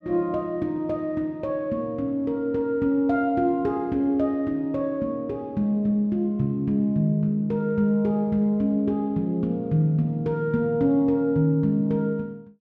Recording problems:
none

